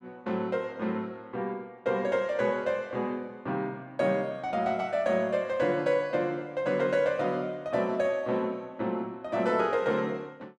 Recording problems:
none

